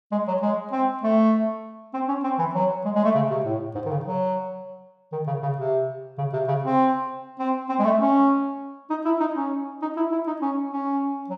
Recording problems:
none

